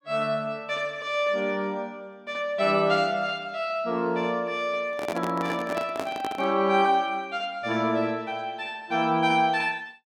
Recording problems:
microphone handling noise; from 5 to 6.5 s; peak -1 dB vs average level

